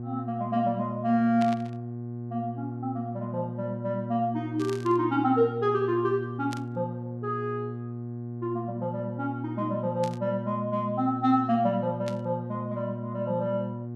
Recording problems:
hum; 60 Hz, harmonics up to 720 Hz, SNR 7 dB
burst of static; 5 times, first at 1.5 s; peak -6 dB vs average level

